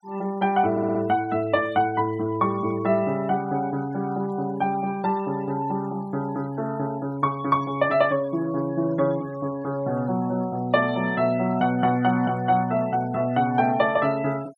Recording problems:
noise reduction artefacts; signal-to-artefact ratio 24 dB
audio stuttering; at 0.5 s

